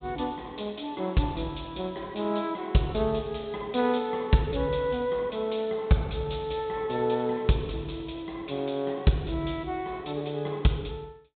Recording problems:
treble cut off; nothing above 4 kHz

